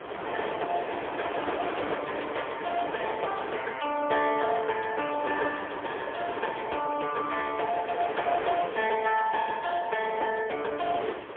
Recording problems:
telephone audio; 340 Hz to 3.3 kHz, AMR-NB, then MP3
wind noise; below 1.4 kHz, SNR 7 dB

